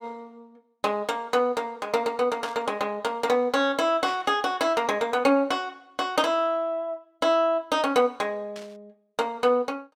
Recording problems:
static burst; at 2.5 s, at 4 s and at 8.5 s; peak -11 dB vs average level

